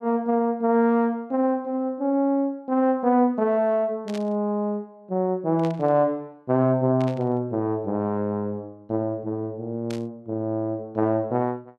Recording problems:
static burst; 4 times, first at 4 s; peak -11 dB vs average level

